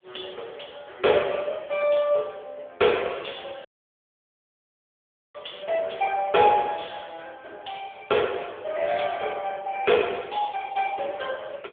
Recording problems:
telephone audio; 340 Hz to 3.5 kHz, AMR-NB
dropout; at 3.5 s for 1.5 s

